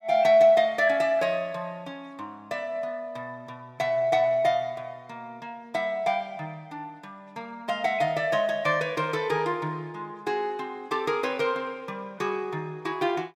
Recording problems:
none

